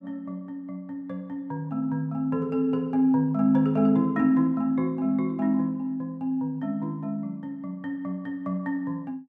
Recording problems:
none

